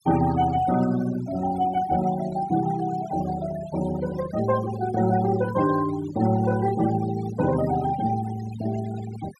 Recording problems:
denoising artefacts; signal-to-artefact ratio 14 dB

